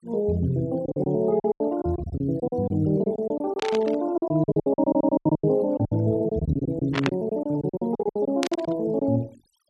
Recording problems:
noise reduction artefacts; signal-to-artefact ratio 25 dB
packet loss; 17% of the sound replaced, filled with silence
burst of static; at 3.5 s, at 7 s and at 8.5 s; peak +2 dB vs average level
stutter; at 5 s

